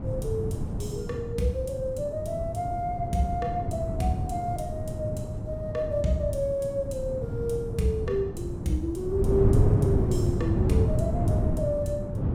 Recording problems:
wind noise; below 190 Hz, SNR 0 dB

